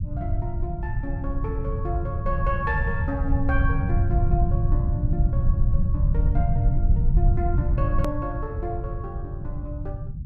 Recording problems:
low-frequency rumble; below 110 Hz, SNR -7 dB
edit click; at 8 s

